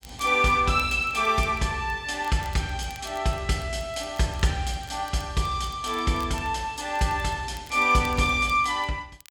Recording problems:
crackle; vinyl, SNR 25 dB

